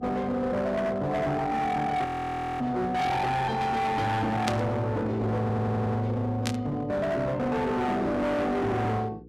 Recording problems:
distortion; hard clipping, signal-to-distortion ratio 7 dB
electrical hum; 60 Hz, harmonics up to 480 Hz, SNR 20 dB
frozen audio; at 2 s for 0.5 s
static burst; at 4.5 s and at 6.5 s; peak +1 dB vs average level
stutter; at 5.5 s

